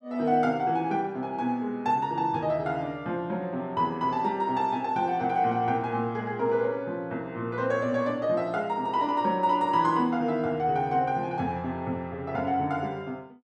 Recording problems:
none

